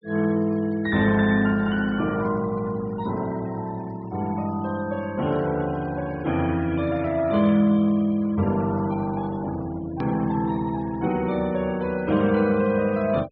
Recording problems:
treble cut off; nothing above 5.5 kHz
denoising artefacts; signal-to-artefact ratio 21 dB
hard cut with a click; at 10 s

